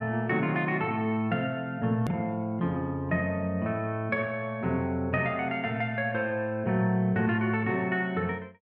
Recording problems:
click at an edit; at 2 s

